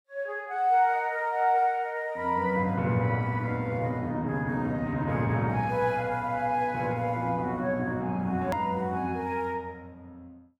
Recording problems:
edit click; at 8.5 s

